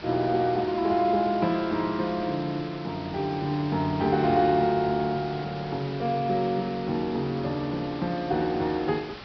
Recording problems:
low-pass filter; nothing above 5.5 kHz
hiss; SNR 14 dB

